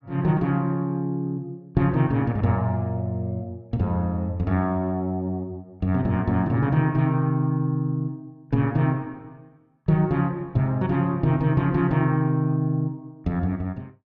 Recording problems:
none

